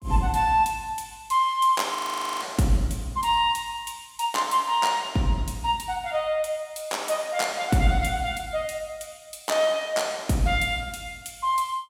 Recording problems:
audio freezing; at 2 s

